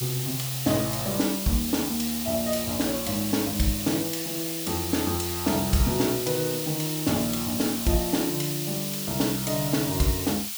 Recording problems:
background hiss; slope +5 dB per octave, SNR 3 dB

